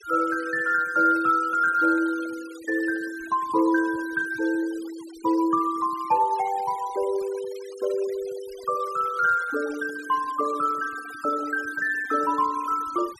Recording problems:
denoising artefacts; signal-to-artefact ratio 20 dB

